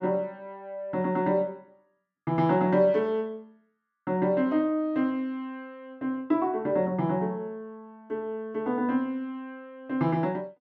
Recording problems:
none

